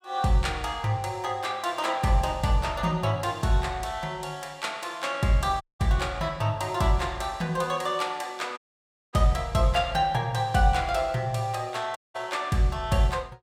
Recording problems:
audio cutting out; at 5.5 s, at 8.5 s for 0.5 s and at 12 s

